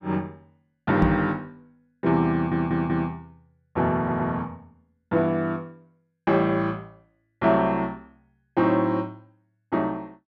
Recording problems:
microphone thump; at 1 s; peak +5 dB vs average level
audio stuttering; at 2.5 s and at 4 s

